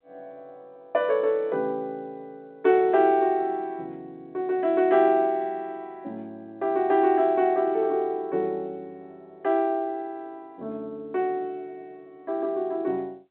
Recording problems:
phone line; 240 Hz to 3.6 kHz, G.711

